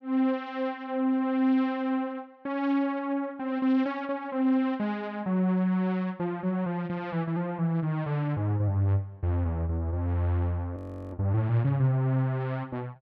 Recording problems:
frozen audio; at 11 s

